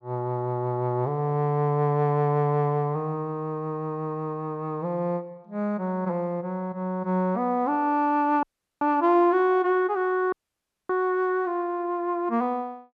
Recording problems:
audio cutting out; at 8.5 s and at 10 s for 0.5 s

